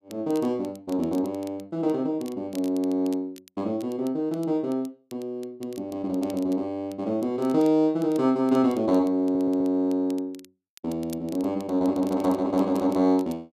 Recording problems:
crackling; vinyl, SNR 25 dB
audio stuttering; at 9 s

